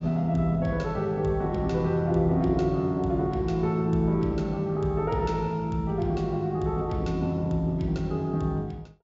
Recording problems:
treble missing; nothing above 8 kHz

